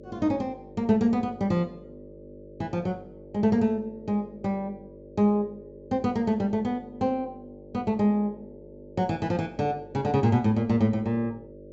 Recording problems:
treble missing; nothing above 7.7 kHz
hum; 50 Hz, harmonics up to 600 Hz, SNR 19 dB

